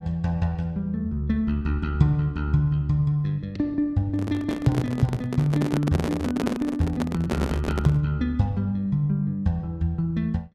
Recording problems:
handling noise; from 4 to 8 s; peak +3 dB vs average level

